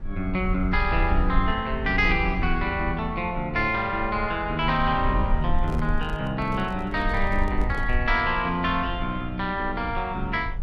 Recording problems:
rumble; below 62 Hz, SNR 7 dB
microphone handling noise; from 5.5 to 8 s; peak -9 dB vs average level

